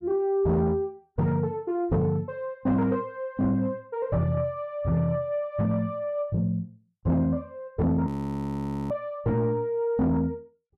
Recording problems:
distortion; soft clipping, signal-to-distortion ratio 12 dB
audio freezing; at 8 s for 1 s

